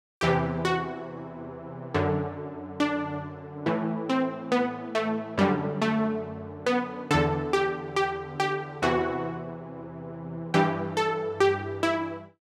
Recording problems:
none

